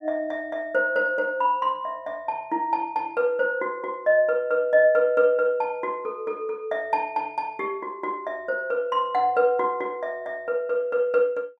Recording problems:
none

